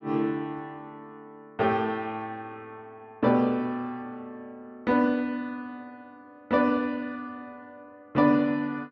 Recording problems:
none

